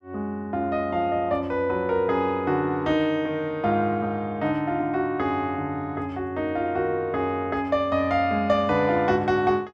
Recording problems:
none

